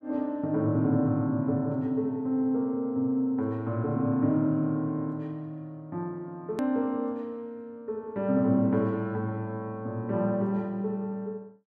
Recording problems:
hard cut with a click; at 6.5 s

